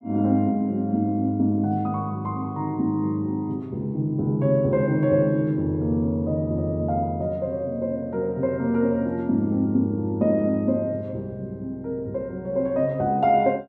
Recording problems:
none

